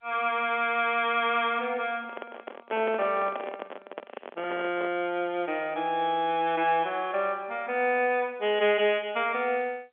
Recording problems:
telephone audio; 260 Hz to 3.4 kHz, G.711
handling noise; from 2 to 5 s; peak -4 dB vs average level

